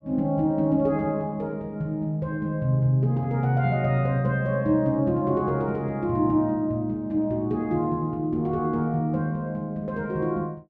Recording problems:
none

